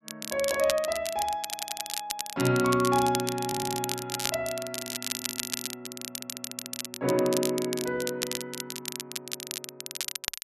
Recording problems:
crackle; vinyl, SNR 5 dB
audio stuttering; 4 times, first at 1.5 s

